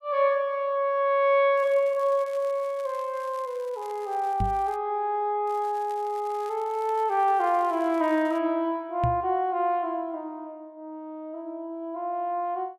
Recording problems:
crackling; from 1.5 to 5 s and from 5.5 to 8.5 s; loose cable, SNR 27 dB
microphone thump; at 4.5 s and at 9 s; peak +2 dB vs average level

